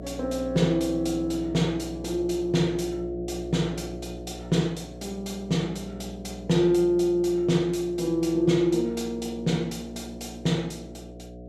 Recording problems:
hum; 60 Hz, harmonics up to 720 Hz, SNR 14 dB

